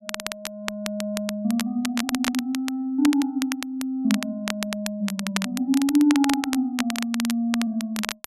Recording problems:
crackling; vinyl, SNR 7 dB

